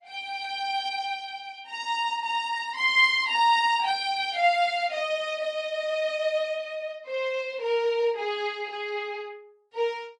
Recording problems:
lossy codec; Opus, then MP3, log-spectral distance 2 dB, nothing above 10.4 kHz

